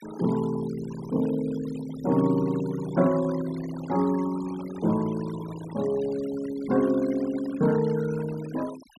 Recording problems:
noise reduction artefacts; signal-to-artefact ratio 17 dB

